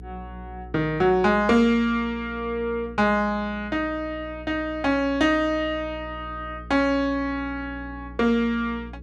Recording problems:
hum; 60 Hz, harmonics up to 480 Hz, SNR 17 dB

